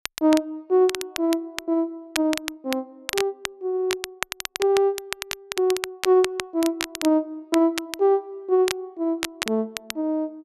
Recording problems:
crackling; vinyl, SNR 8 dB

